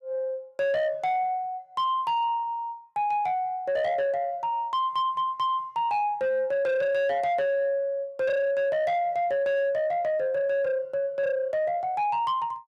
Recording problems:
distorted audio; soft clipping, signal-to-distortion ratio 10 dB

